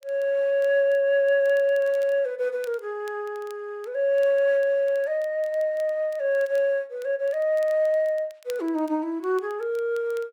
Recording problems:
crackling; vinyl, SNR 30 dB

